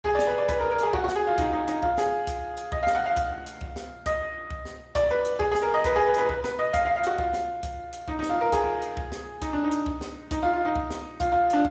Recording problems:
codec artefacts; Speex, log-spectral distance 4 dB, nothing above 7.6 kHz

